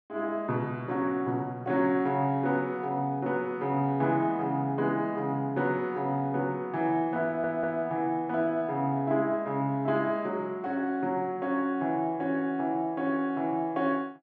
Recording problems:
stutter; at 7.5 s

